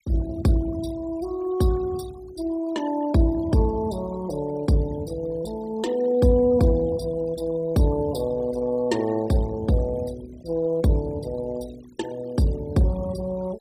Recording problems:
noise reduction artefacts; signal-to-artefact ratio 20 dB

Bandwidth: 15.5 kHz